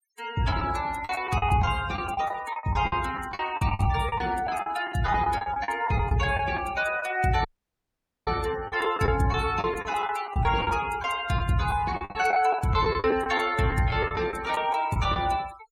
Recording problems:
noise reduction artefacts; signal-to-artefact ratio 18 dB
lost packets; 12% of the sound replaced, filled with the last packet
dropout; at 7.5 s for 1 s

